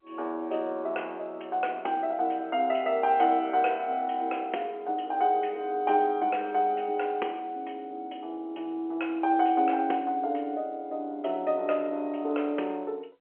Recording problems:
telephone audio; 260 Hz to 3.2 kHz, G.711

